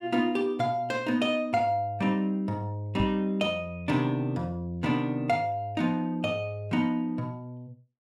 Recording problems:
microphone bump; at 3 s; peak 0 dB vs average level

